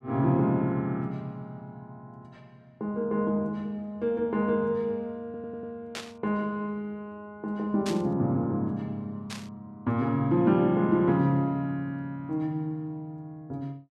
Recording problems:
stutter; at 5.5 s
burst of static; at 6 s, at 8 s and at 9.5 s; peak -4 dB vs average level

